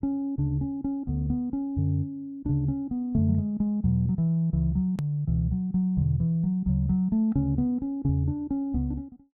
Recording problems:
hard cut with a click; at 5 s

